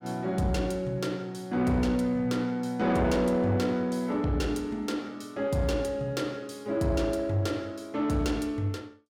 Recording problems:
distortion; soft clipping, signal-to-distortion ratio 11 dB

